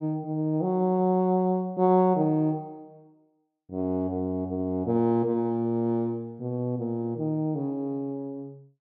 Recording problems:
none

